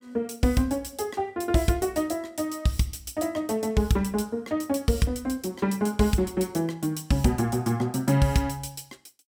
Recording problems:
none

